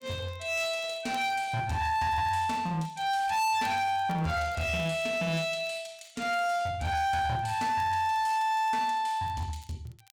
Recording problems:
distortion; hard clipping, uneven, signal-to-distortion ratio 7 dB
crackle; vinyl, SNR 30 dB

